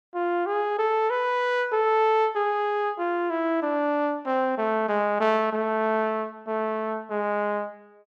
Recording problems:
none

